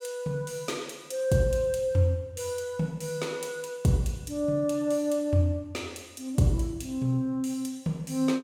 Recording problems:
none

